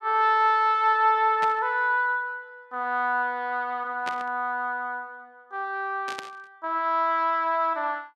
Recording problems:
static burst; at 1.5 s, at 4 s and at 6 s; peak -6 dB vs average level

